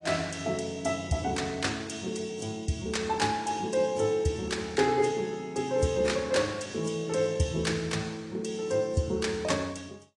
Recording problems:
lossy codec; AAC, log-spectral distance 3 dB

